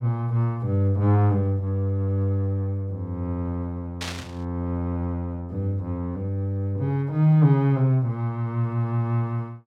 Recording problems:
burst of static; at 4 s; peak -4 dB vs average level

